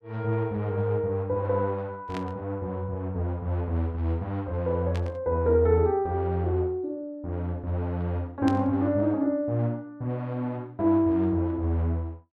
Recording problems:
static burst; at 2 s, at 5 s and at 8.5 s; peak -7 dB vs average level

